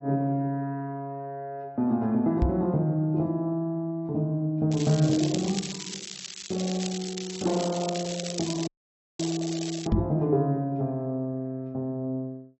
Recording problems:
lossy compression; AAC, log-spectral distance 6 dB, nothing above 6.3 kHz
knock on the microphone; at 2.5 s and at 10 s; peak +7 dB vs average level
crackle; from 4.5 to 10 s; loose cable, SNR 9 dB
audio cutting out; at 8.5 s for 0.5 s

